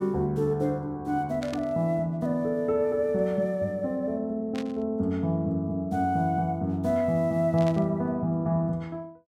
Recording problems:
burst of static; at 1.5 s, at 4.5 s and at 7.5 s; peak -9 dB vs average level

